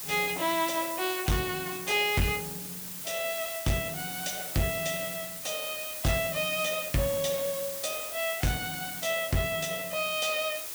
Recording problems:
distortion; hard clipping, uneven, signal-to-distortion ratio 8 dB
hiss; slope 0 dB per octave, SNR 5 dB

